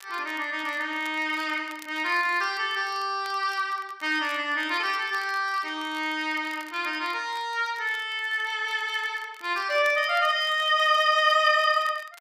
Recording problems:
crackle; vinyl, SNR 24 dB

